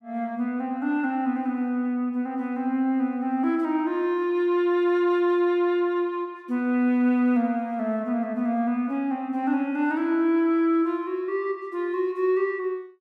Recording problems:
none

